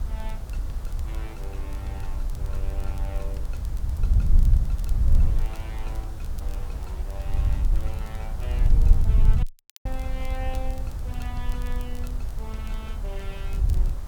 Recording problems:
hiss; SNR 4 dB
wind on the microphone; below 64 Hz, SNR -14 dB
crackle; vinyl, SNR 13 dB
dropout; at 9.5 s

